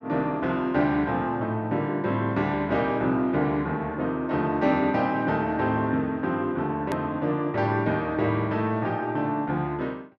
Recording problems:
edit click; at 7 s

